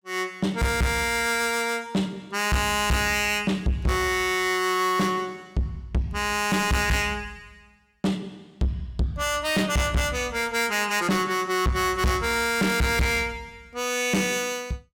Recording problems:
distorted audio; soft clipping, signal-to-distortion ratio 7 dB

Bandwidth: 18 kHz